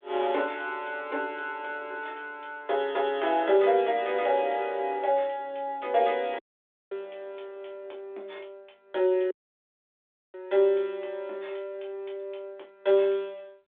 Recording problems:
phone line; 320 Hz to 3.6 kHz, G.726
dropout; at 6.5 s for 0.5 s and at 9.5 s for 1 s

